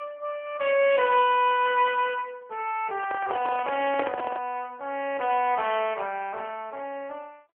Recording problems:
telephone audio; 300 Hz to 3.3 kHz, AMR-NB
handling noise; from 3 to 4.5 s; peak -3 dB vs average level

